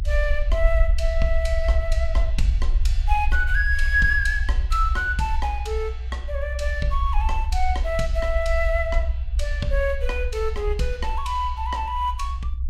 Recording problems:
rumble; below 62 Hz, SNR 0 dB

